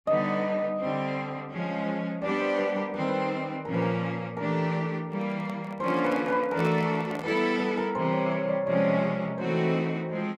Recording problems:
handling noise; from 5 to 7.5 s; peak -4 dB vs average level

